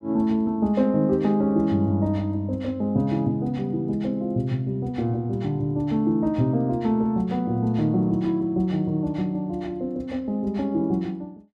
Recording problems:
none

